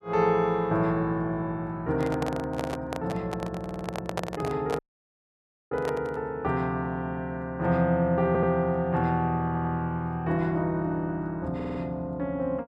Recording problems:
microphone handling noise; from 2 to 6 s; peak +2 dB vs average level
audio stuttering; 4 times, first at 3.5 s
dropout; at 5 s for 1 s

